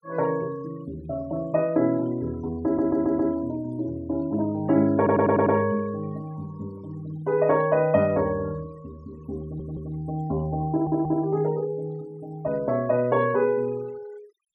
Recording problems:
denoising artefacts; signal-to-artefact ratio 26 dB
stutter; 4 times, first at 2.5 s

